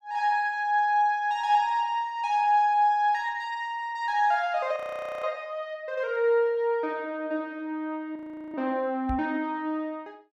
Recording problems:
audio freezing; at 5 s and at 8 s
microphone bump; at 9 s; peak -3 dB vs average level

